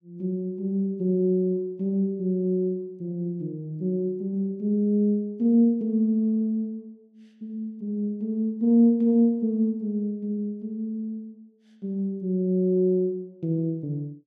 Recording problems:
none

